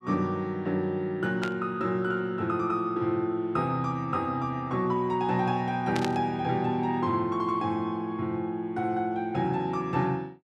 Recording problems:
burst of static; at 1.5 s and at 6 s; peak -1 dB vs average level

